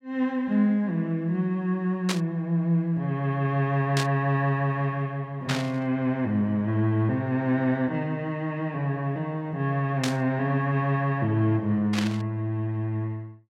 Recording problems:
burst of static; 5 times, first at 2 s; peak +2 dB vs average level

